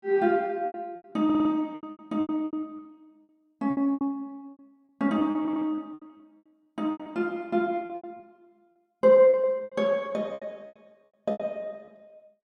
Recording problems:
packet loss; 19% of the sound replaced, filled with repeated pitch periods
stutter; at 1.5 s and at 5.5 s

